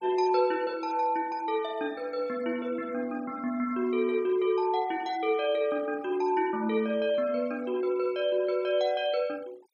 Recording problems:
denoising artefacts; signal-to-artefact ratio 25 dB

